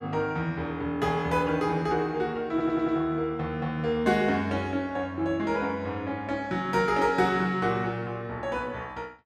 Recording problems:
audio stuttering; at 2.5 s

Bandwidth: 14 kHz